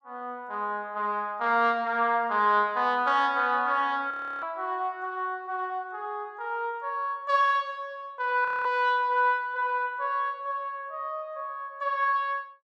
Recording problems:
audio freezing; at 4 s and at 8.5 s

